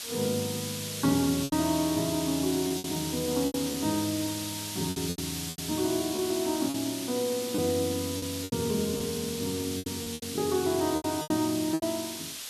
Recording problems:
background hiss; slope +3 dB per octave, SNR 5 dB
packet loss; 9% of the sound replaced, filled with repeated pitch periods

